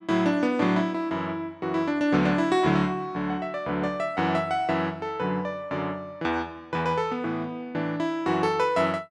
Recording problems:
none

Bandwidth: 12 kHz